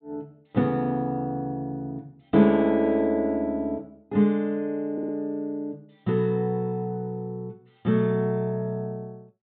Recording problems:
treble missing; nothing above 4 kHz
stutter; at 5 s

